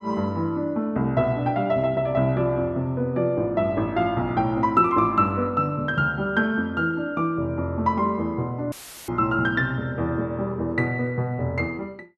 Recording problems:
audio cutting out; at 8.5 s; filled with static

